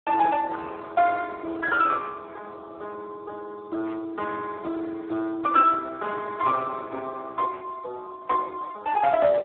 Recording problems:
telephone audio; 280 Hz to 2.8 kHz, Speex

